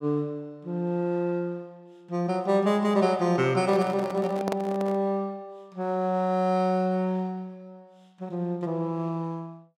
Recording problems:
microphone handling noise; from 3.5 to 5 s; peak -1 dB vs average level

